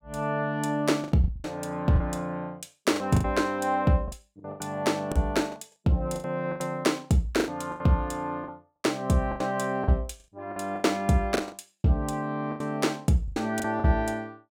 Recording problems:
packet loss; 12% of the sound replaced, filled with the last packet

